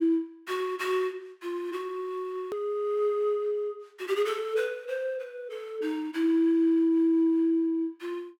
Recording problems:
edit click; at 2.5 s

